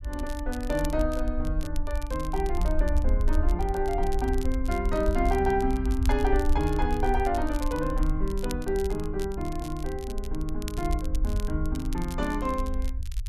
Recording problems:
rumble; below 60 Hz, SNR 2 dB
crackle; vinyl, SNR 17 dB

